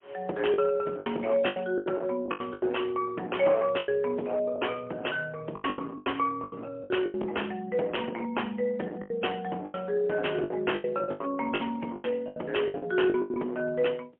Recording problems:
telephone audio; 240 Hz to 3.3 kHz, AMR-NB, then MP3
distorted audio; hard clipping, signal-to-distortion ratio 12 dB
lost packets; 14% of the sound replaced, filled with the last packet

